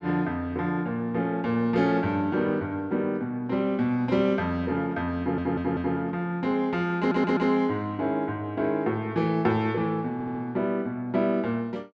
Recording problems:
audio stuttering; at 5 s, at 7 s and at 10 s

